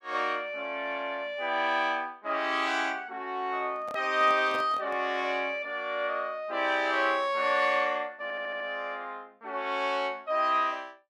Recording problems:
microphone handling noise; from 3.5 to 5 s; peak -7 dB vs average level
stutter; at 8 s

